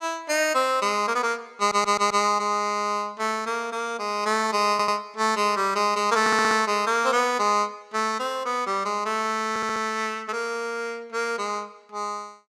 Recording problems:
stutter; 4 times, first at 1.5 s

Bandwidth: 14.5 kHz